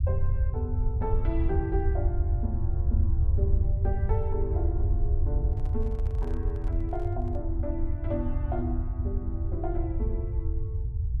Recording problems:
low-frequency rumble; below 84 Hz, SNR -7 dB
microphone handling noise; from 5.5 to 7.5 s; peak -10 dB vs average level

